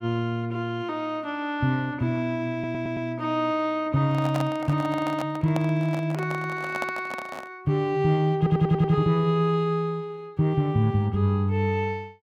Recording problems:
audio stuttering; at 2.5 s and at 8.5 s
microphone handling noise; from 4 to 7.5 s; peak -2 dB vs average level

